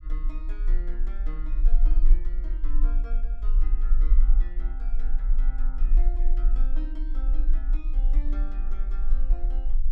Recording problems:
low-frequency rumble; below 34 Hz, strongest tone 20 Hz, SNR -18 dB

